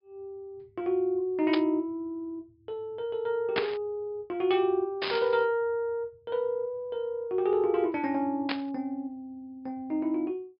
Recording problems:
treble missing; nothing above 5.5 kHz
burst of static; 4 times, first at 1.5 s; peak +4 dB vs average level

